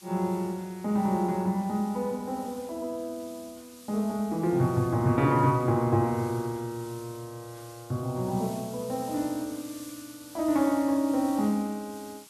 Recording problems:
hiss; SNR 20 dB

